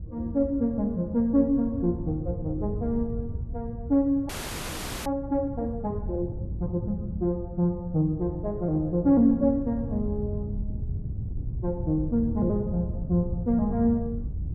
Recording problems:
wind on the microphone; below 120 Hz, SNR 8 dB
audio freezing; at 4.5 s for 1 s

